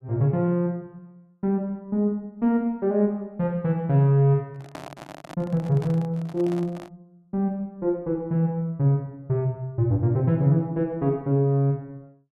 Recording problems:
microphone handling noise; from 4.5 to 7 s; peak -9 dB vs average level

